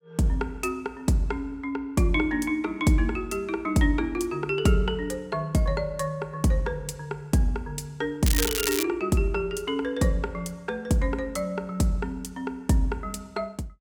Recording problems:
crackle; at 8.5 s; loose cable, SNR 1 dB

